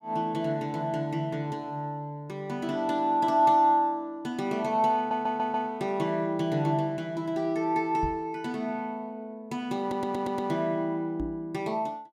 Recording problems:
audio stuttering; at 5 s and at 10 s
microphone thump; at 8 s and at 11 s; peak -3 dB vs average level

